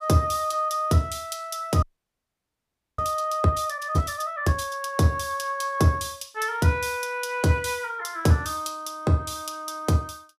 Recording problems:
frozen audio; at 2 s for 1 s

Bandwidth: 15.5 kHz